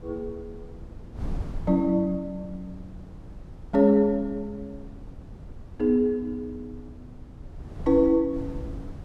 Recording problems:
wind noise; below 150 Hz, SNR 17 dB

